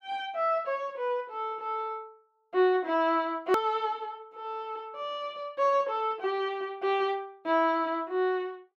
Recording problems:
edit click; at 3.5 s

